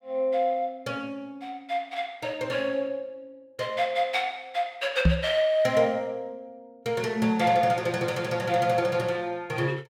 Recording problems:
knock on the microphone; at 5 s; peak +9 dB vs average level

